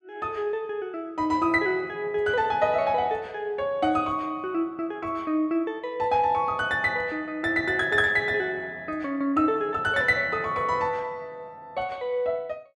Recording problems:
none

